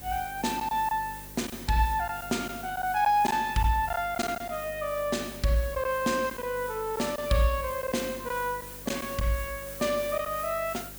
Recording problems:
electrical hum; 50 Hz, harmonics up to 600 Hz, SNR 20 dB
hiss; slope -1 dB per octave, SNR 13 dB
lost packets; 4% of the sound replaced, filled with silence

